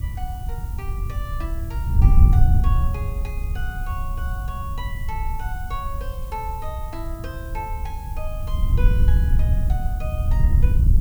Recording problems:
hiss; SNR 12 dB
wind on the microphone; below 82 Hz, SNR -12 dB

